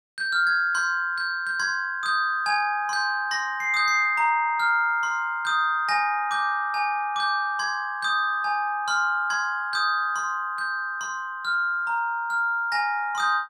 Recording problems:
none

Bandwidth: 16 kHz